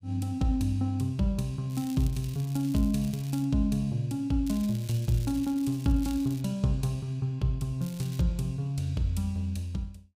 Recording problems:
crackle; from 1.5 to 3.5 s, from 4.5 to 6.5 s and at 8 s; loose cable, SNR 19 dB

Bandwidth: 15.5 kHz